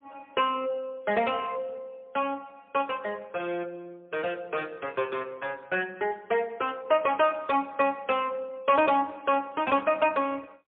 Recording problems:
phone line; 260 Hz to 3.4 kHz, AMR-NB, then MP3

